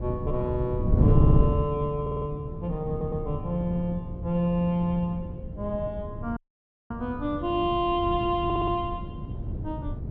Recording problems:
wind on the microphone; below 170 Hz, SNR 1 dB
stutter; 4 times, first at 1 s
audio cutting out; at 6.5 s for 0.5 s

